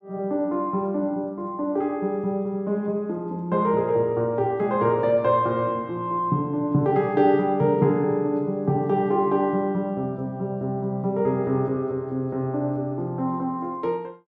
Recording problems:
none

